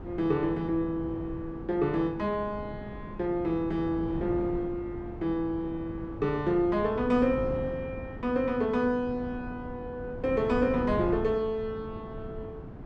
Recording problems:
wind on the microphone; below 330 Hz, SNR 10 dB

